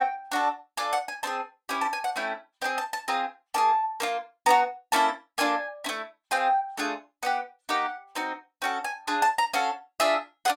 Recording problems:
none

